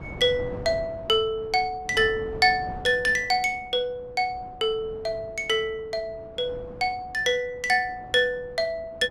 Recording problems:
wind noise; below 530 Hz, SNR 18 dB

